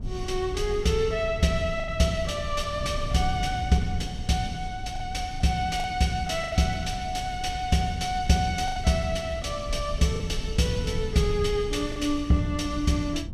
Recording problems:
rumble; below 94 Hz, SNR 12 dB
wind noise; below 120 Hz, SNR 13 dB
lost packets; 3% of the sound replaced, filled with the last packet

